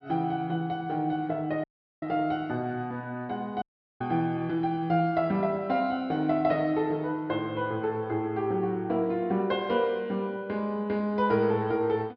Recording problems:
treble missing; nothing above 5.5 kHz
dropout; at 1.5 s and at 3.5 s

